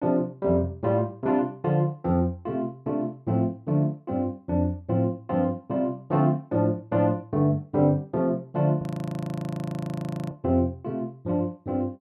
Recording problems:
frozen audio; at 9 s for 1.5 s

